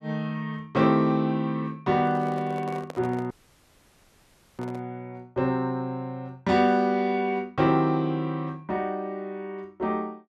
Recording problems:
handling noise; from 2 to 5 s; peak -8 dB vs average level
audio cutting out; at 3.5 s for 1.5 s

